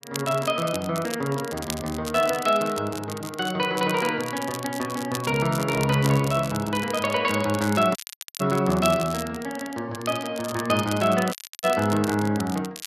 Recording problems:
crackling; vinyl, SNR 13 dB
audio cutting out; at 8 s and at 11 s

